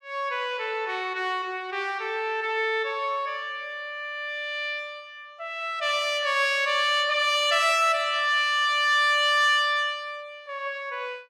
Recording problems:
none

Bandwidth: 16 kHz